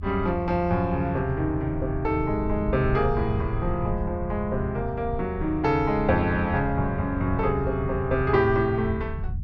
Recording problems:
rumble; below 110 Hz, SNR 8 dB

